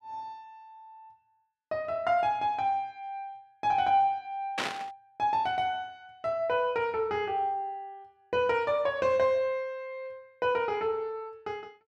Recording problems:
burst of static; at 4.5 s; peak +3 dB vs average level

